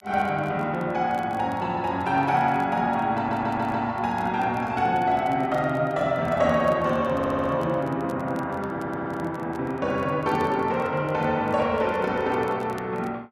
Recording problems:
crackle; vinyl, SNR 30 dB
audio stuttering; at 3 s, at 7 s and at 8.5 s

